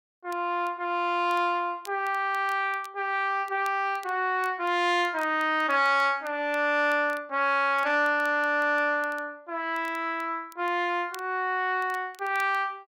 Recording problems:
crackle; vinyl, SNR 27 dB

